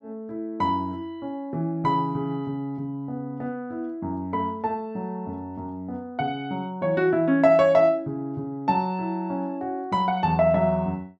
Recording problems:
none

